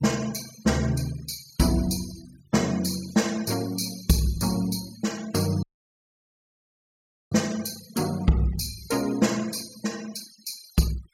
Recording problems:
denoising artefacts; signal-to-artefact ratio 18 dB
dropout; at 5.5 s for 1.5 s

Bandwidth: 16.5 kHz